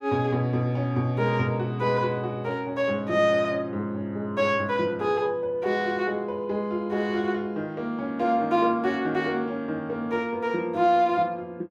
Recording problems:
none

